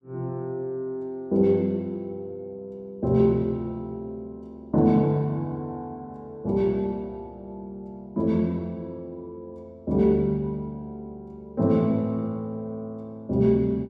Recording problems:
none

